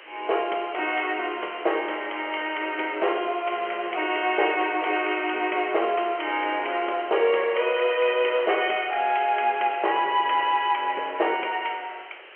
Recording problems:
telephone audio; 320 Hz to 3.2 kHz, G.711
hiss; SNR 20 dB

